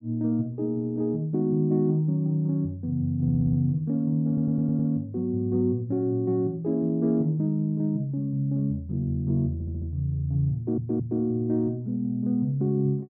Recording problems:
audio stuttering; 4 times, first at 3 s

